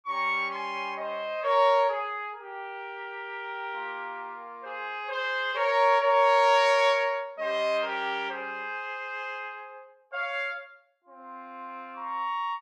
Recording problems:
none

